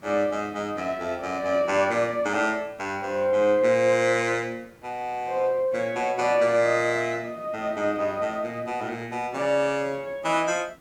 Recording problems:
background hiss; slope -6 dB per octave, SNR 30 dB

